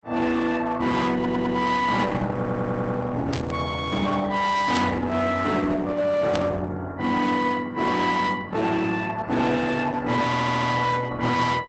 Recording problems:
lossy compression; Opus, log-spectral distance 3 dB, nothing above 8 kHz
distortion; hard clipping, uneven, signal-to-distortion ratio 10 dB
audio stuttering; at 1 s, at 2.5 s and at 10 s
static burst; at 3.5 s, at 4.5 s and at 6.5 s; peak -4 dB vs average level

